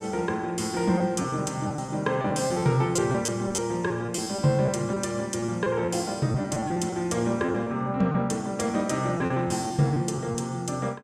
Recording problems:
lost packets; 9% of the sound replaced, filled with repeated pitch periods

